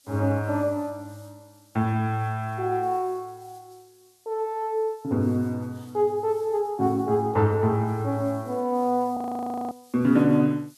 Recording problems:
background hiss; SNR 30 dB
audio freezing; at 9 s for 0.5 s

